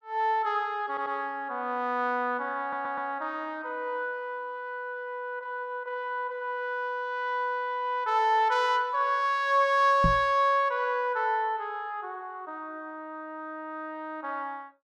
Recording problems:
audio stuttering; at 1 s and at 2.5 s
microphone thump; at 10 s; peak +5 dB vs average level

